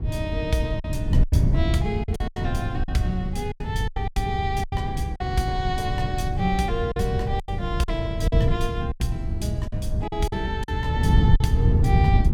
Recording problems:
wind noise; below 130 Hz, SNR -3 dB
lost packets; 9% of the sound replaced, filled with silence

